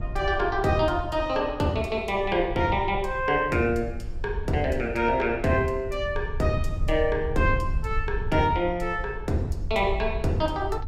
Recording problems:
rumble; below 72 Hz, SNR 9 dB

